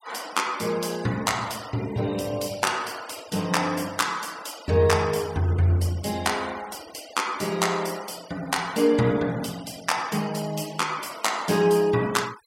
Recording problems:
noise reduction artefacts; signal-to-artefact ratio 19 dB

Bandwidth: 16 kHz